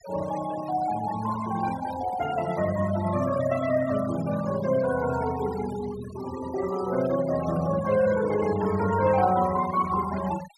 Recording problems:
noise reduction artefacts; signal-to-artefact ratio 14 dB

